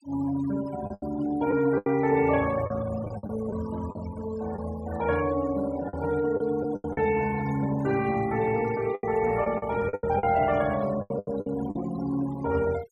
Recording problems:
noise reduction artefacts; signal-to-artefact ratio 17 dB
packet loss; 9% of the sound replaced, filled with the last packet

